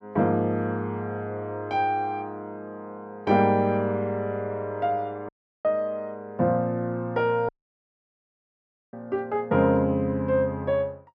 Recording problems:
dropout; at 5.5 s and at 7.5 s for 1.5 s

